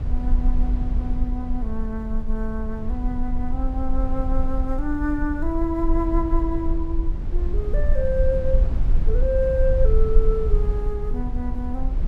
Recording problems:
rumble; below 52 Hz, strongest tone 18 Hz, SNR -2 dB

